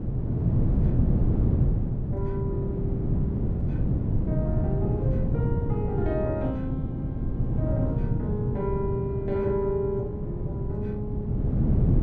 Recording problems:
wind on the microphone; below 190 Hz, SNR -6 dB

